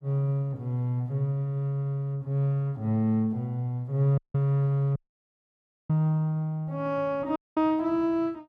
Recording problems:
dropout; at 4 s, at 5 s for 1 s and at 7.5 s

